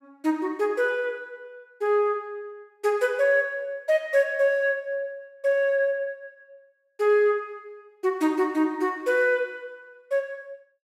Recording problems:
none

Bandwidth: 16 kHz